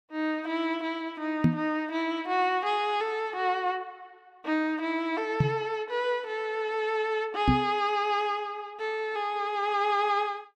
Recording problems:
microphone bump; at 1.5 s, at 5.5 s and at 7.5 s; peak +10 dB vs average level

